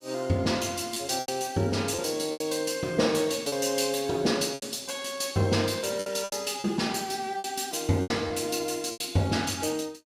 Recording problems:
packet loss; 7% of the sound replaced, filled with repeated pitch periods

